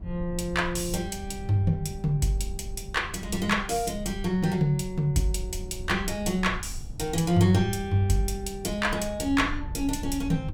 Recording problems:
low-frequency rumble; below 90 Hz, SNR 12 dB

